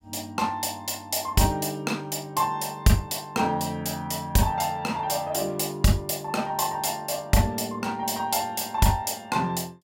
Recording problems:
none

